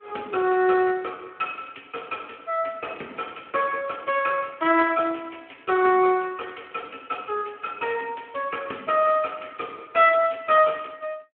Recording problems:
telephone audio; 240 Hz to 3.3 kHz, Speex

